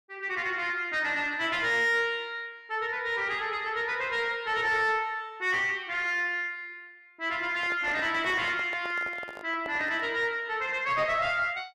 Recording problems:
distortion; soft clipping, signal-to-distortion ratio 10 dB
microphone handling noise; from 7.5 to 10 s; peak -8 dB vs average level

